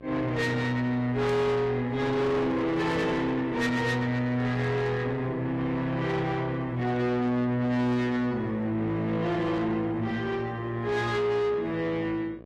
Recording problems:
lossy codec; AAC, log-spectral distance 2 dB, nothing above 14.7 kHz
distortion; soft clipping, signal-to-distortion ratio 8 dB
hum; 60 Hz, harmonics up to 1.3 kHz, SNR 20 dB

